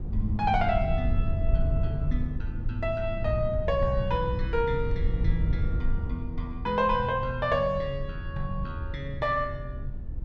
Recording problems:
rumble; below 86 Hz, SNR 3 dB

